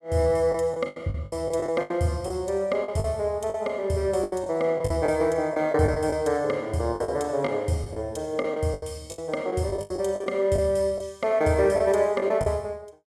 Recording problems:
lost packets; 11% of the sound replaced, filled with the last packet

